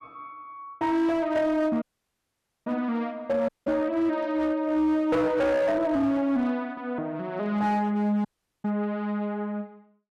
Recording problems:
distortion; hard clipping, signal-to-distortion ratio 12 dB
dropout; at 2 s for 1 s, at 3.5 s and at 8.5 s

